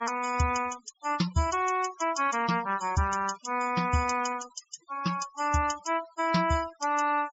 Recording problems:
low-pass filter; nothing above 8 kHz
noise reduction artefacts; signal-to-artefact ratio 16 dB

